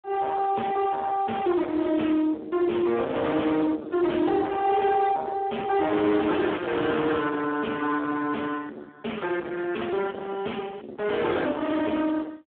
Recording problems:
phone line; 240 Hz to 3.4 kHz, Speex
distorted audio; soft clipping, signal-to-distortion ratio 7 dB

